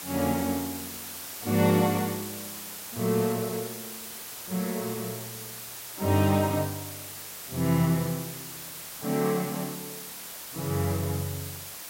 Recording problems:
hiss; slope 0 dB per octave, SNR 9 dB

